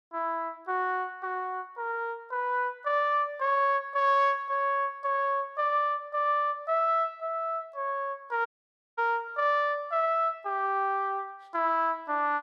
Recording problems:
dropout; at 8.5 s for 0.5 s

